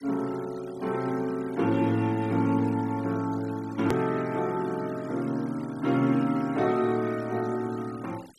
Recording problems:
denoising artefacts; signal-to-artefact ratio 21 dB
edit click; at 4 s

